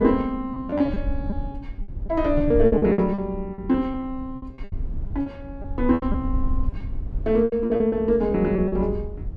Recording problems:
rumble; below 76 Hz, SNR 10 dB
lost packets; 14% of the sound replaced, filled with repeated pitch periods

